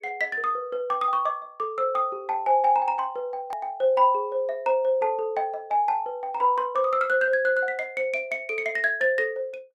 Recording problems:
hard cut with a click; at 3.5 s

